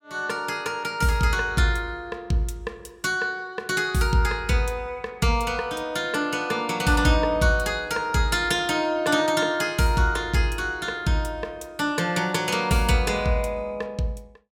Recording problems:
none

